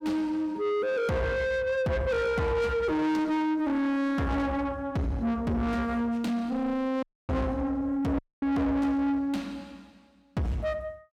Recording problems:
distorted audio; soft clipping, signal-to-distortion ratio 8 dB
dropout; at 7 s and at 8 s

